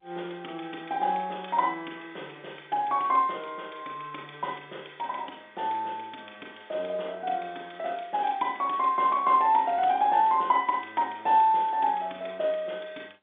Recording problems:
phone line; 240 Hz to 3.6 kHz, G.711

